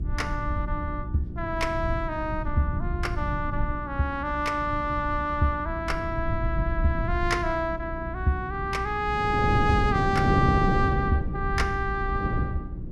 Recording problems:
hum; 60 Hz, harmonics up to 360 Hz, SNR 12 dB
low-frequency rumble; below 100 Hz, SNR 7 dB
wind on the microphone; below 260 Hz, SNR 1 dB

